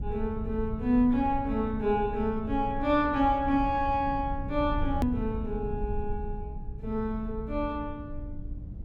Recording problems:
low-frequency rumble; below 92 Hz, SNR 9 dB
hard cut with a click; at 5 s

